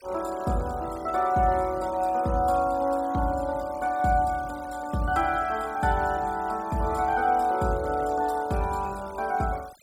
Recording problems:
denoising artefacts; signal-to-artefact ratio 22 dB

